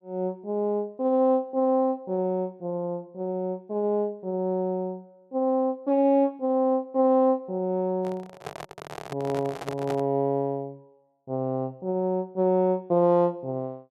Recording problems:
handling noise; from 8 to 10 s; peak -4 dB vs average level

